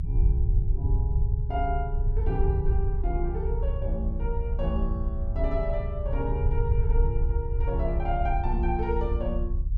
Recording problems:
rumble; below 68 Hz, strongest tone 30 Hz, SNR -4 dB

